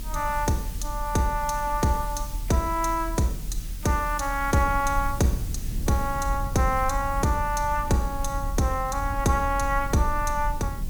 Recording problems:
background hiss; slope +2 dB per octave, SNR 16 dB
low-frequency rumble; below 64 Hz, strongest tone 40 Hz, SNR 7 dB

